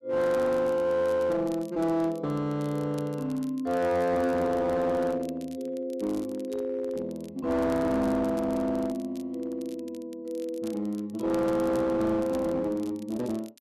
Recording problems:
distorted audio; hard clipping, uneven, signal-to-distortion ratio 9 dB
crackle; vinyl, SNR 25 dB

